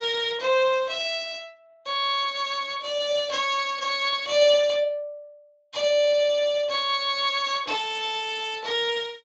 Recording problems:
lossy codec; Speex, log-spectral distance 4 dB

